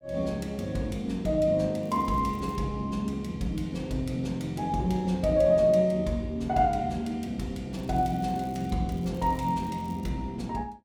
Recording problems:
crackle; at 2 s, from 7.5 to 8.5 s and from 9 to 10 s; loose cable, SNR 28 dB

